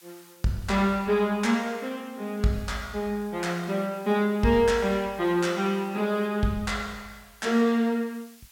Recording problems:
hiss; slope +2 dB per octave, SNR 26 dB

